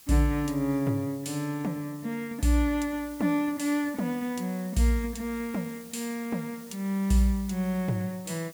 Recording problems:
background hiss; slope +1 dB per octave, SNR 19 dB

